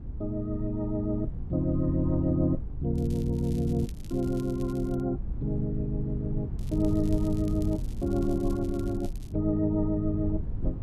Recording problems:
low-frequency rumble; below 98 Hz, SNR 8 dB
crackling; from 3 to 5 s and from 6.5 to 9.5 s; loose cable, SNR 24 dB

